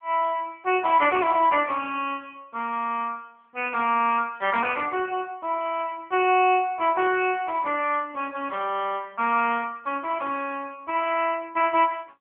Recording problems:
phone line; 240 Hz to 3.2 kHz, AMR-NB

